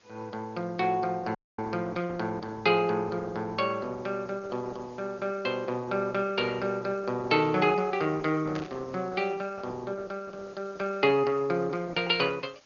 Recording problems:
low-pass filter; nothing above 6.8 kHz
lossy compression; Opus, log-spectral distance 5 dB
background hiss; slope -1 dB per octave, SNR 30 dB
audio cutting out; at 1.5 s
burst of static; at 8.5 s; peak -6 dB vs average level

